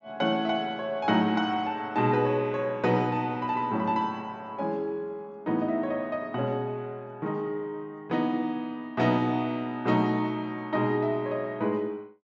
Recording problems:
treble missing; nothing above 7.7 kHz

